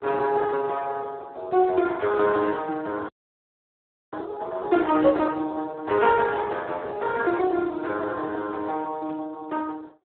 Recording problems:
phone line; 280 Hz to 2.1 kHz, Speex
static burst; at 2 s and at 9 s; peak -18 dB vs average level
audio freezing; at 3 s for 1 s

